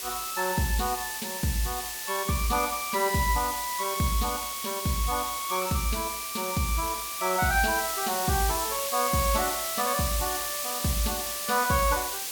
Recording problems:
hiss; SNR 2 dB

